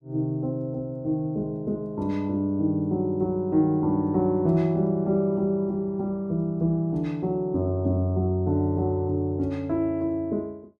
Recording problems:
none

